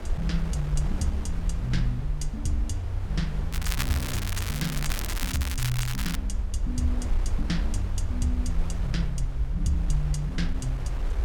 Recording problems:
rumble; below 60 Hz, SNR 0 dB
wind on the microphone; below 1.3 kHz, SNR 11 dB
crackle; from 3.5 to 6 s; loose cable, SNR 2 dB

